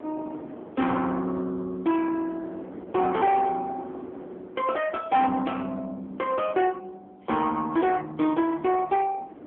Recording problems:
phone line; 220 Hz to 3.4 kHz, AMR-NB
distortion; soft clipping, signal-to-distortion ratio 12 dB
wind on the microphone; below 560 Hz, SNR 19 dB

